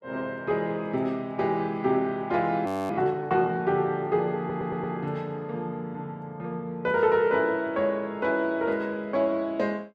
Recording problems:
frozen audio; at 2.5 s
stutter; at 4.5 s

